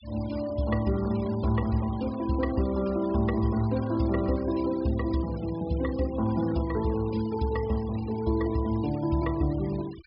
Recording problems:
low-pass filter; nothing above 5.5 kHz
noise reduction artefacts; signal-to-artefact ratio 19 dB

